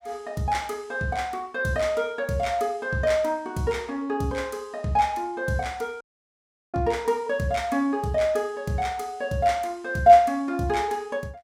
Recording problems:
audio cutting out; at 6 s for 0.5 s

